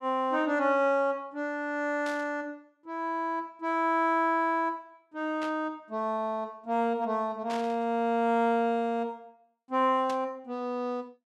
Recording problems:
static burst; 4 times, first at 2 s; peak -9 dB vs average level

